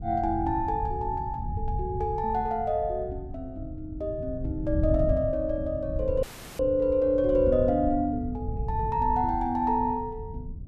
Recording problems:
wind noise; below 120 Hz, SNR 8 dB
dropout; at 6 s

